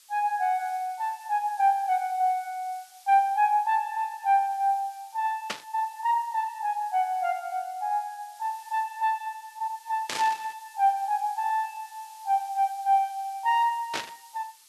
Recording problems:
background hiss; slope +5 dB per octave, SNR 24 dB
burst of static; at 5.5 s, at 10 s and at 14 s; peak +1 dB vs average level

